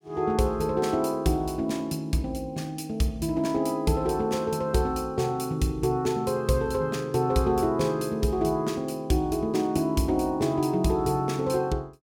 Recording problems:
none

